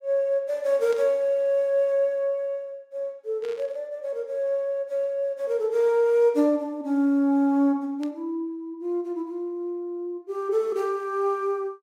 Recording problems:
burst of static; at 1 s, at 3.5 s and at 8 s; peak -14 dB vs average level

